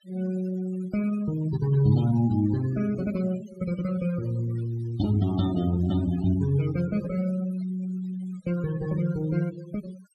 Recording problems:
denoising artefacts; signal-to-artefact ratio 16 dB

